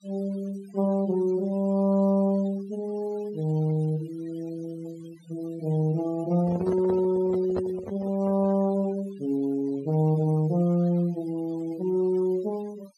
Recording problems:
denoising artefacts; signal-to-artefact ratio 22 dB
microphone handling noise; from 6.5 to 8.5 s; peak -3 dB vs average level

